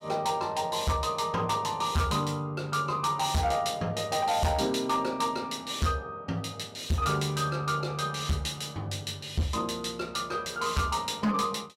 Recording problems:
distortion; hard clipping, signal-to-distortion ratio 8 dB

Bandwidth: 16 kHz